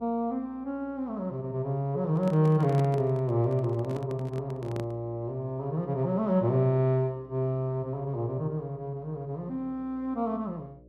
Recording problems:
electrical hum; 60 Hz, harmonics up to 600 Hz, SNR 27 dB
handling noise; from 2 to 5 s; peak -4 dB vs average level

